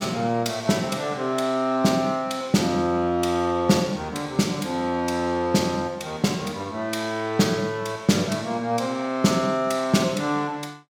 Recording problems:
none

